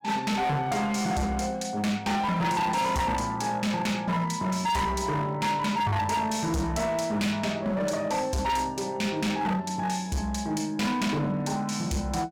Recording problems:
distorted audio; hard clipping, signal-to-distortion ratio 7 dB

